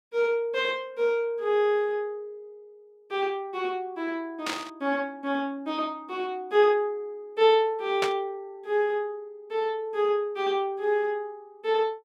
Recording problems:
burst of static; at 4.5 s and at 8 s; peak +2 dB vs average level

